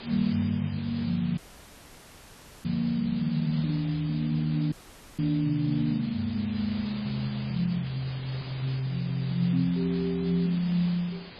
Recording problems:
lossy codec; MP3, log-spectral distance 10 dB, nothing above 11.3 kHz
background hiss; SNR 15 dB
dropout; at 1.5 s for 1.5 s and at 4.5 s

